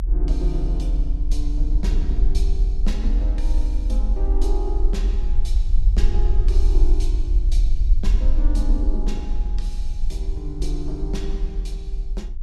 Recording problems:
low-frequency rumble; below 44 Hz, SNR -10 dB

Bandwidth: 14.5 kHz